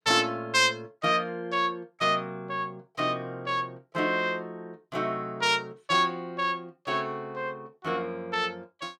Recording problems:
none

